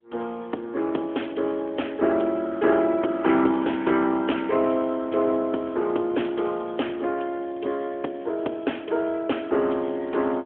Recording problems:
phone line; 240 Hz to 3.4 kHz, AMR-NB

